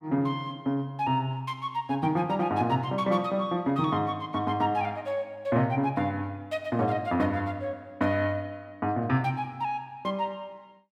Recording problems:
none

